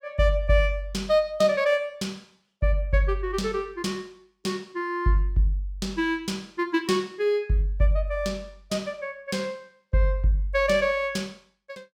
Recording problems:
none

